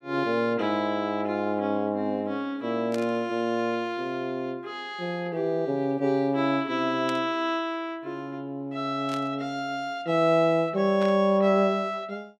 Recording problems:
static burst; 4 times, first at 3 s; peak -8 dB vs average level

